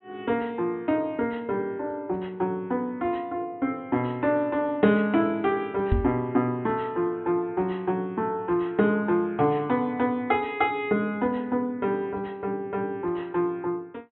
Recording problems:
treble cut off; nothing above 3.9 kHz
microphone thump; at 6 s; peak +6 dB vs average level

